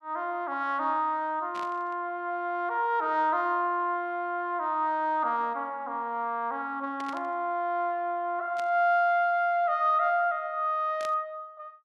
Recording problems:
static burst; 4 times, first at 1.5 s; peak -10 dB vs average level

